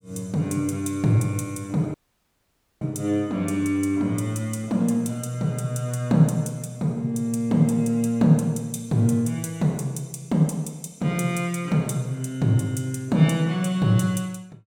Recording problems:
audio cutting out; at 2 s for 1 s

